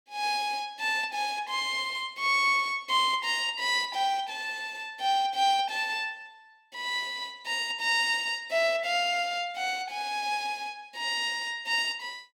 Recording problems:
none

